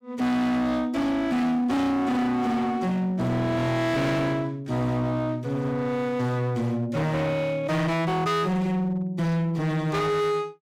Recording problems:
distorted audio; hard clipping, signal-to-distortion ratio 7 dB

